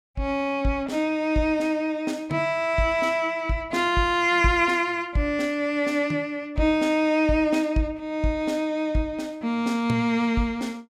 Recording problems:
none

